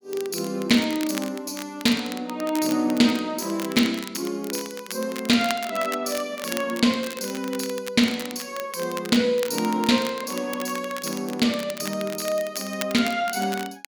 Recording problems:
crackling; vinyl, SNR 12 dB

